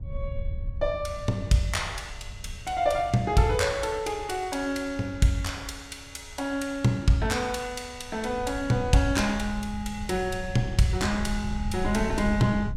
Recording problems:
wind noise; below 92 Hz, SNR 11 dB

